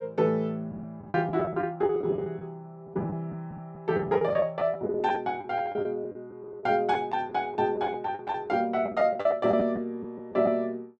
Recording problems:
packet loss; 11% of the sound replaced, filled with the last packet

